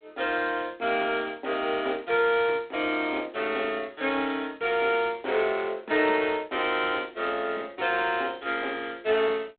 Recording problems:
phone line; 260 Hz to 3.7 kHz, G.726

